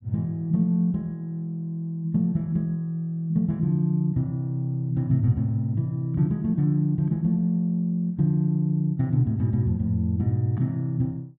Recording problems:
none

